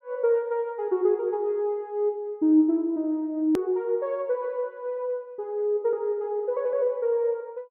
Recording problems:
hard cut with a click; at 3.5 s

